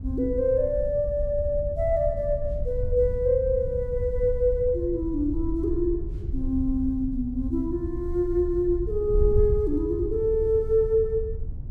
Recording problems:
wind noise; below 80 Hz, SNR 7 dB

